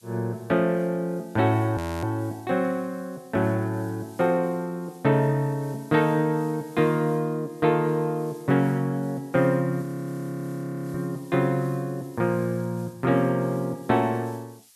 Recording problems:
hiss; slope +4 dB per octave, SNR 27 dB
frozen audio; at 2 s and at 10 s for 1 s

